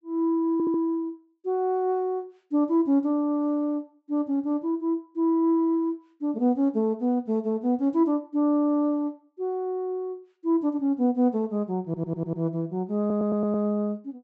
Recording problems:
treble missing; nothing above 7.9 kHz
audio stuttering; at 0.5 s, at 12 s and at 13 s

